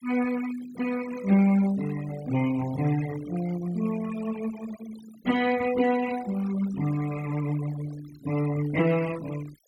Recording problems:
noise reduction artefacts; signal-to-artefact ratio 16 dB

